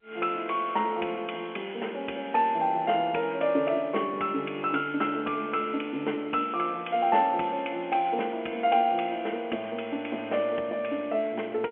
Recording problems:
phone line; 240 Hz to 3.2 kHz, G.711

